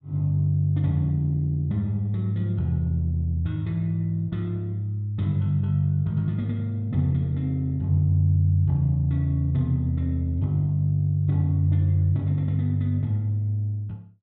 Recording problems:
none

